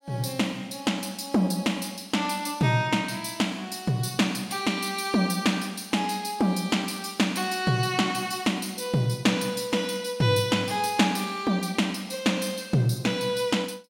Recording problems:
none

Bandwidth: 16 kHz